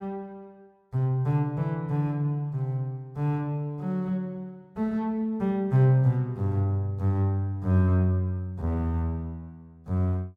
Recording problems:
none

